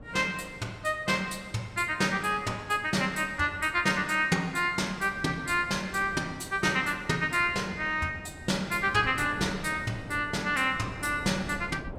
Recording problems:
wind on the microphone; below 440 Hz, SNR 18 dB

